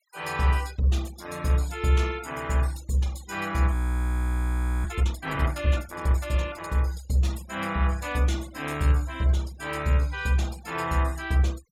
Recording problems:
denoising artefacts; signal-to-artefact ratio 21 dB
audio freezing; at 3.5 s for 1 s

